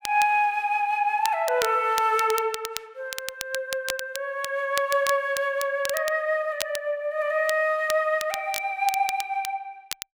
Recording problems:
crackling; vinyl, SNR 11 dB

